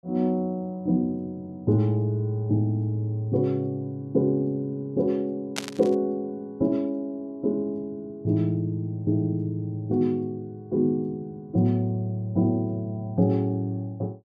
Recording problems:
burst of static; at 5.5 s; peak +2 dB vs average level

